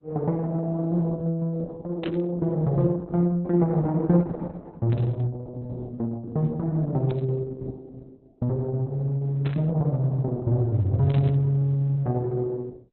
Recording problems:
codec artefacts; Opus, log-spectral distance 2 dB
static burst; 5 times, first at 2 s; peak -9 dB vs average level

